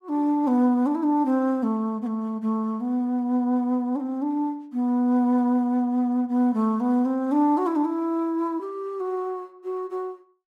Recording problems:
none

